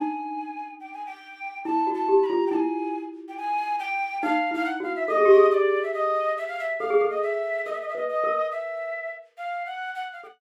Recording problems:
none

